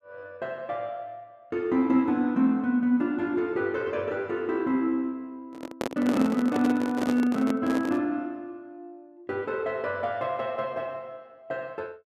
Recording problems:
microphone handling noise; from 5.5 to 8 s; peak +1 dB vs average level

